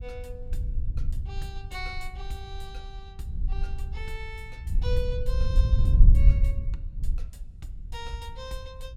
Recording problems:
wind on the microphone; below 62 Hz, SNR -13 dB

